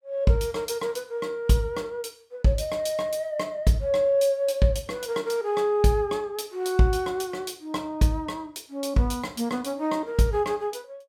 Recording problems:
none

